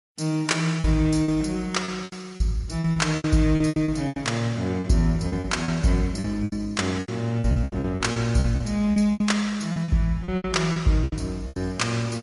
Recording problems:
lossy compression; MP3, log-spectral distance 2 dB, nothing above 11 kHz
packet loss; 16% of the sound replaced, filled with repeated pitch periods

